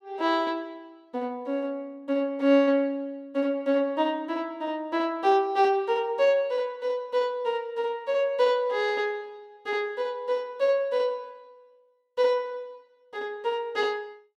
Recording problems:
none

